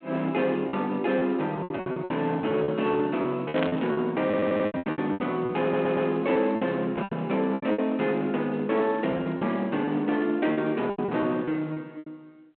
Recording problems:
telephone audio; 220 Hz to 3.7 kHz, G.726
distorted audio; hard clipping, uneven, signal-to-distortion ratio 15 dB
lost packets; 14% of the sound replaced, filled with repeated pitch periods
burst of static; at 3.5 s; peak -3 dB vs average level
audio stuttering; at 4.5 s and at 5.5 s

